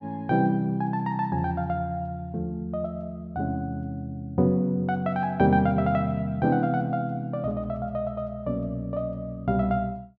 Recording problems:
none

